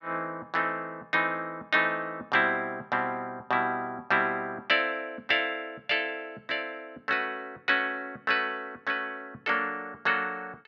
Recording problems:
none

